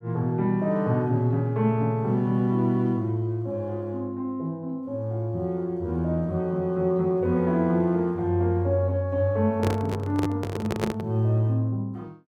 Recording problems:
microphone handling noise; from 9.5 to 11 s; peak +3 dB vs average level

